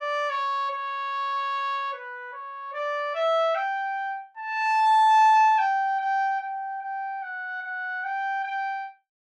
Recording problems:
none

